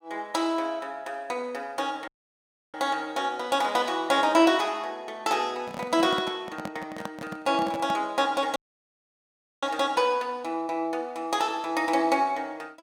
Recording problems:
audio cutting out; at 2 s for 0.5 s and at 8.5 s for 1 s
handling noise; from 5.5 to 8 s; peak -4 dB vs average level

